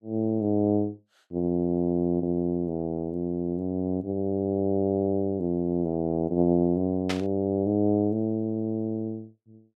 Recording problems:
static burst; at 7 s; peak 0 dB vs average level

